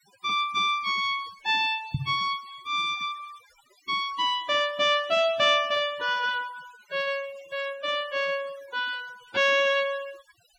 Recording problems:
noise reduction artefacts; signal-to-artefact ratio 22 dB
microphone thump; at 2 s; peak +2 dB vs average level

